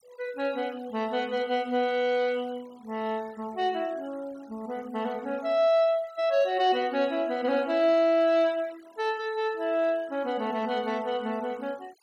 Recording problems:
denoising artefacts; signal-to-artefact ratio 24 dB

